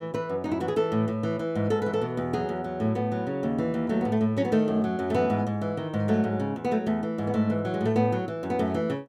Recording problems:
none

